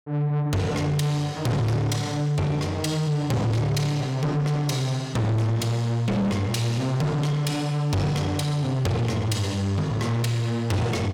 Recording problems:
distorted audio; soft clipping, signal-to-distortion ratio 7 dB

